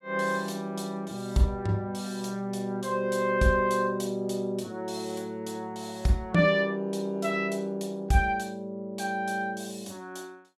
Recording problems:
none

